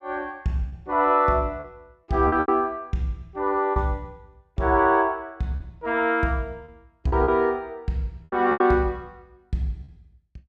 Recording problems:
packet loss; 7% of the sound replaced, filled with repeated pitch periods

